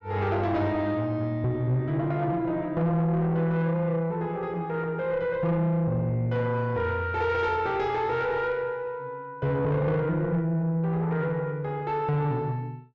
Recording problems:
treble missing; nothing above 8 kHz
distorted audio; soft clipping, signal-to-distortion ratio 10 dB

